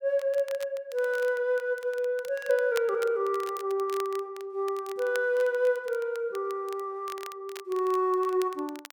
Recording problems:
crackling; vinyl, SNR 19 dB

